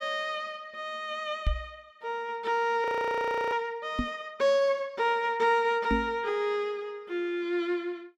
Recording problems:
knock on the microphone; at 1.5 s, at 4 s and at 6 s; peak +4 dB vs average level
frozen audio; at 3 s for 0.5 s

